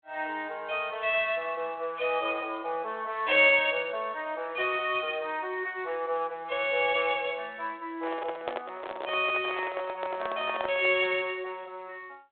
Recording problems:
phone line; 320 Hz to 3.7 kHz, G.726
handling noise; from 8 to 11 s; peak -1 dB vs average level

